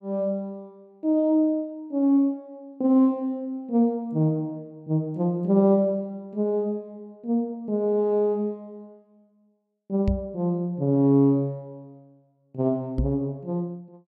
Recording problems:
microphone thump; at 10 s and at 13 s; peak +2 dB vs average level

